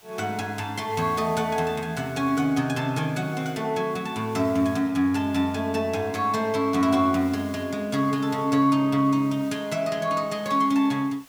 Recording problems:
hiss; slope -1 dB per octave, SNR 25 dB

